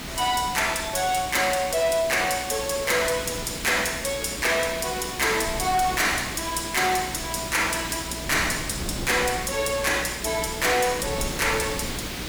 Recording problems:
distortion; hard clipping, signal-to-distortion ratio 11 dB
electrical hum; 60 Hz, harmonics up to 660 Hz, SNR 19 dB
background hiss; SNR 10 dB
wind noise; below 390 Hz, SNR 16 dB

